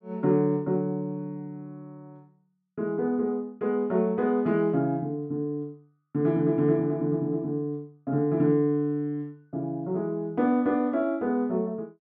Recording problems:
none

